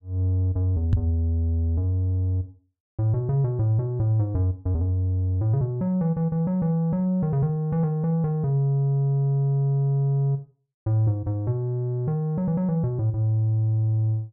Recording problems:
microphone bump; at 1 s; peak +8 dB vs average level

